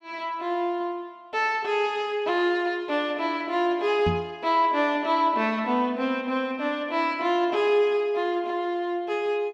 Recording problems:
knock on the microphone; at 4 s; peak +1 dB vs average level

